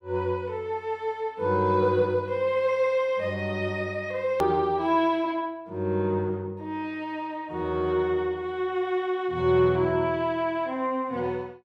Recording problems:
edit click; at 4.5 s

